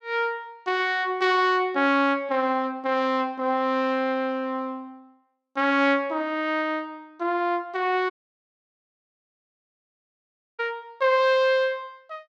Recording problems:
audio cutting out; at 8 s for 2.5 s

